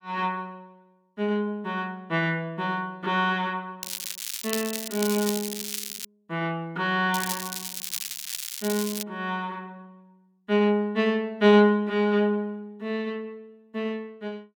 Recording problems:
crackle; from 4 to 6 s and from 7 to 9 s; loose cable, SNR 6 dB

